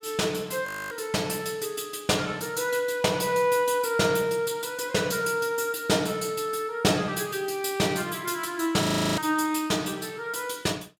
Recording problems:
frozen audio; at 0.5 s and at 9 s

